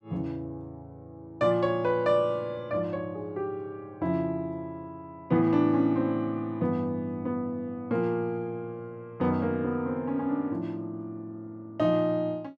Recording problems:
none

